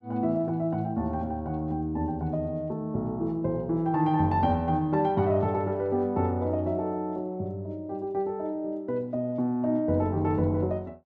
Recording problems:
none

